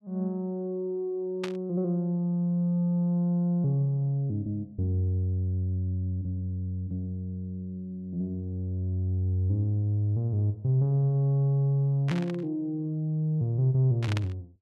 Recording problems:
static burst; at 1.5 s, at 12 s and at 14 s; peak -4 dB vs average level

